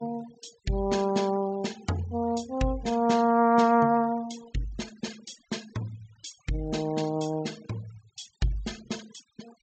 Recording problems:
low-pass filter; nothing above 8 kHz
denoising artefacts; signal-to-artefact ratio 22 dB

